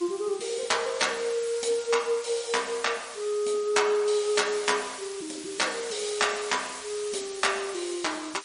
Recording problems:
lossy codec; MP3, log-spectral distance 11 dB, nothing above 10.4 kHz
background hiss; slope +2 dB per octave, SNR 12 dB

